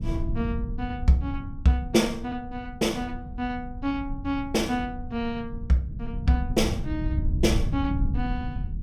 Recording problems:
low-frequency rumble; below 110 Hz, SNR 5 dB

